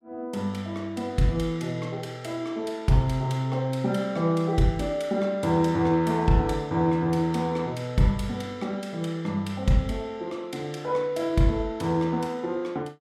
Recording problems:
none

